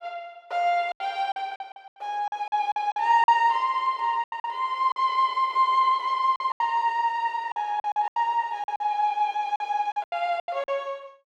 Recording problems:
packet loss; 12% of the sound replaced, filled with silence

